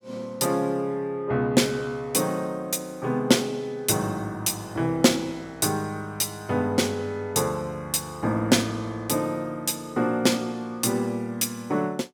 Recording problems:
none

